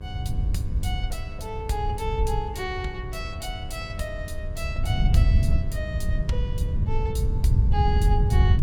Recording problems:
hum; 50 Hz, harmonics up to 1.7 kHz, SNR 14 dB
wind on the microphone; below 100 Hz, SNR -6 dB

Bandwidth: 17.5 kHz